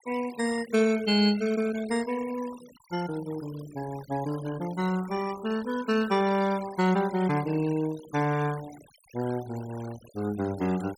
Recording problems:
noise reduction artefacts; signal-to-artefact ratio 17 dB

